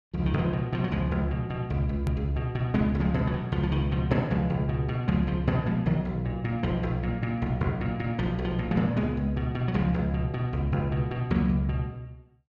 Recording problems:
click at an edit; at 2 s

